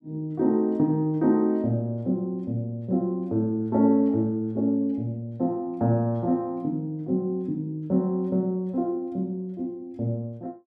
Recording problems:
none

